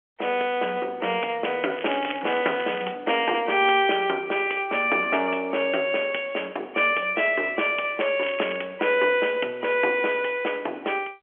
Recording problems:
telephone audio; 280 Hz to 3.3 kHz, G.711
crackling; from 2 to 3 s and at 8 s; loose cable, SNR 13 dB

